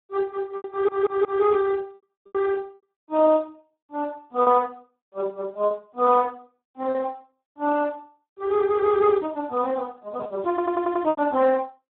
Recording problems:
phone line; 260 Hz to 2 kHz, Speex
packet loss; 5% of the sound replaced, filled with repeated pitch periods
audio stuttering; at 0.5 s and at 10 s

